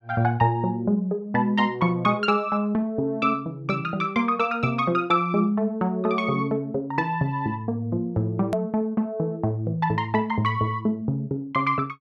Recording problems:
click at an edit; at 8.5 s

